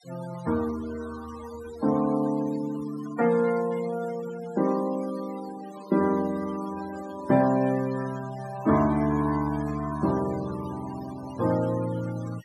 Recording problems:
denoising artefacts; signal-to-artefact ratio 17 dB

